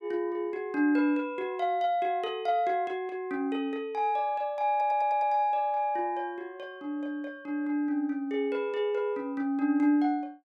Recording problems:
audio stuttering; at 4.5 s

